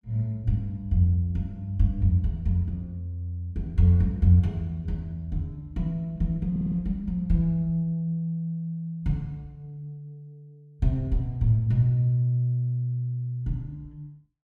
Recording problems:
stutter; at 6.5 s

